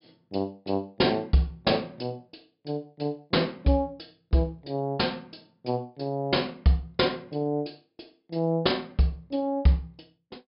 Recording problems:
treble cut off; nothing above 5.5 kHz

